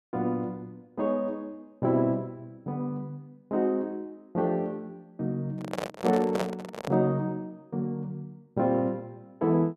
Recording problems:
handling noise; from 5.5 to 7 s; peak +4 dB vs average level

